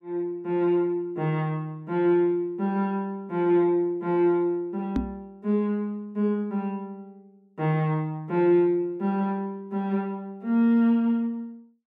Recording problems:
microphone thump; at 5 s; peak +3 dB vs average level

